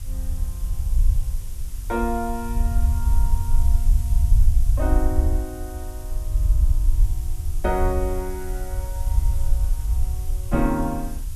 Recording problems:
background hiss; SNR 15 dB
low-frequency rumble; below 64 Hz, SNR -4 dB

